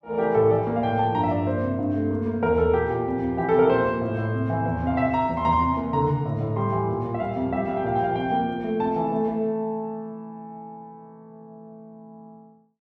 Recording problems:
none

